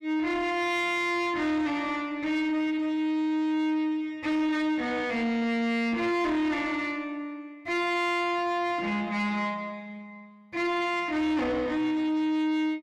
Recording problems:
distorted audio; soft clipping, signal-to-distortion ratio 10 dB

